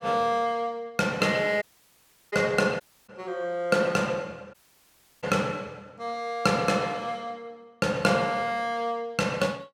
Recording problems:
dropout; at 1.5 s for 0.5 s, at 3 s and at 4.5 s for 0.5 s

